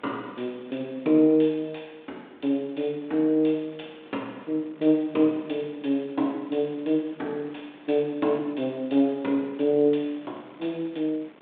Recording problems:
telephone audio; 220 Hz to 3.7 kHz, G.726
wind noise; below 1.9 kHz, SNR 26 dB

